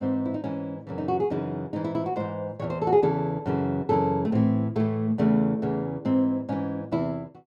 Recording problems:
none

